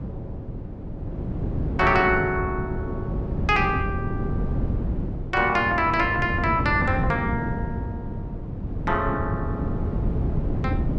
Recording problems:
wind on the microphone; below 230 Hz, SNR 5 dB

